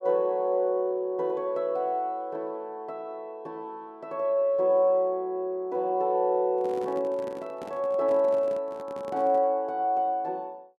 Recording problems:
microphone handling noise; from 6.5 to 9.5 s; peak -10 dB vs average level

